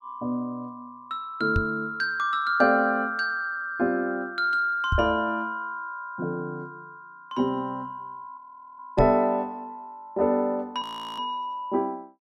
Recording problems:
microphone thump; at 1.5 s, at 5 s and at 9 s; peak +3 dB vs average level
audio freezing; at 8.5 s and at 11 s

